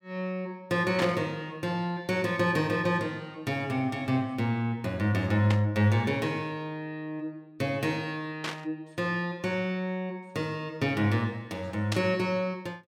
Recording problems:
static burst; 4 times, first at 1 s; peak +1 dB vs average level

